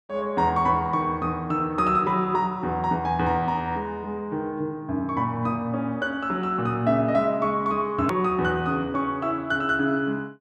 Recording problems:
edit click; at 8 s

